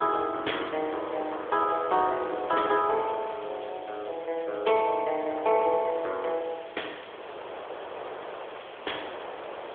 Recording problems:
telephone audio; 340 Hz to 3.5 kHz, AMR-NB
hiss; SNR 20 dB
wind on the microphone; below 1 kHz, SNR 12 dB

